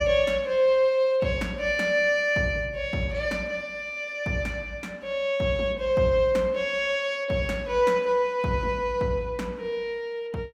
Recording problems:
none

